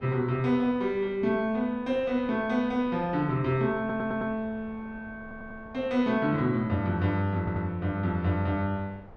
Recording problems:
wind on the microphone; below 620 Hz, SNR 23 dB
stutter; at 4 s, at 5 s and at 7.5 s

